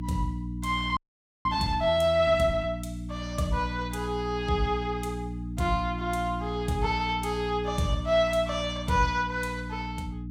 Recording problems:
hum; 60 Hz, harmonics up to 300 Hz, SNR 8 dB
frozen audio; at 1 s

